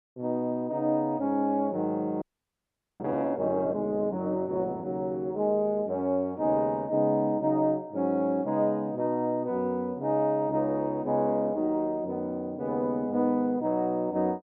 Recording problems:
audio freezing; at 2 s for 1 s

